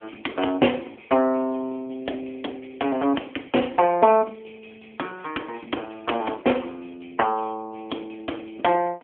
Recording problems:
phone line; 240 Hz to 3.4 kHz, AMR-NB

